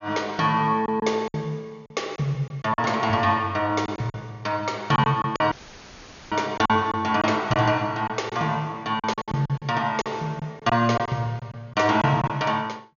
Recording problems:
low-pass filter; nothing above 6.8 kHz
packet loss; 9% of the sound replaced, filled with silence
dropout; at 5.5 s for 1 s; filled with static

